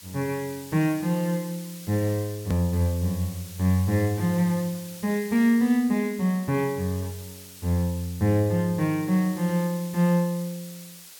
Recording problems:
hiss; slope +2 dB per octave, SNR 17 dB
hard cut with a click; at 2.5 s

